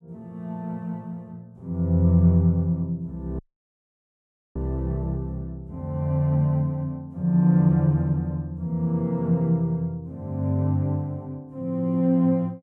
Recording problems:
audio cutting out; at 3.5 s for 1 s

